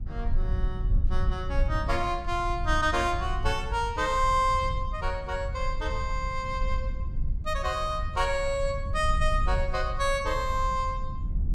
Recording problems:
low-frequency rumble; below 68 Hz, SNR 4 dB

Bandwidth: 15.5 kHz